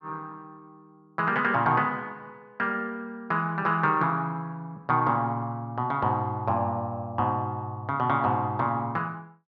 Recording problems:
none

